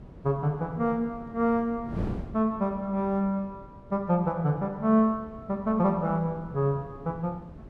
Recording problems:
wind on the microphone; below 310 Hz, SNR 15 dB

